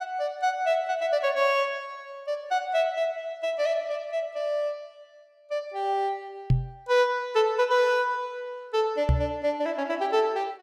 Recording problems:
microphone thump; at 6.5 s and at 9 s; peak +8 dB vs average level

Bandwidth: 16.5 kHz